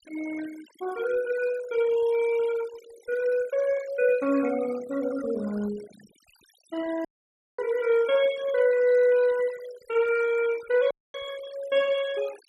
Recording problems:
denoising artefacts; signal-to-artefact ratio 18 dB
dropout; at 7 s for 0.5 s and at 11 s

